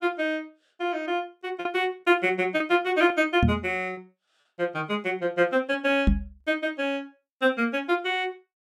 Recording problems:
packet loss; 3% of the sound replaced, filled with repeated pitch periods
knock on the microphone; at 3.5 s and at 6 s; peak +7 dB vs average level

